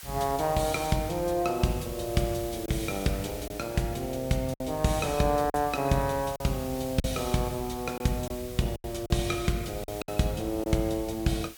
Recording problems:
background hiss; slope +2 dB per octave, SNR 14 dB
lost packets; 4% of the sound replaced, filled with silence

